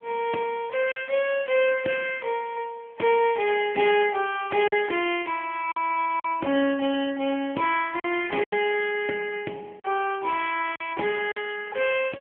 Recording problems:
phone line; 220 Hz to 3.2 kHz, AMR-NB
packet loss; 3% of the sound replaced, filled with silence

